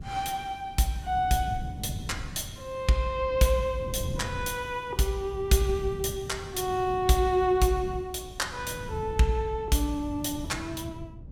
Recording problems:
wind on the microphone; below 170 Hz, SNR 12 dB

